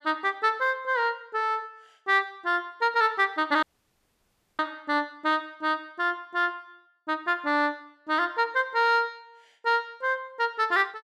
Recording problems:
dropout; at 3.5 s for 1 s

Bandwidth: 14.5 kHz